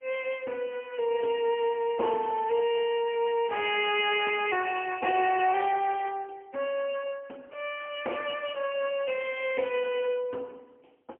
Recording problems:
phone line; 240 Hz to 3.1 kHz, AMR-NB, then MP3

